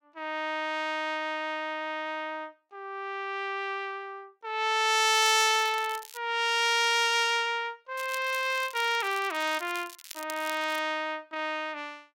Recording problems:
crackle; from 5 to 6 s and from 8 to 11 s; loose cable, SNR 17 dB

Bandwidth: 16 kHz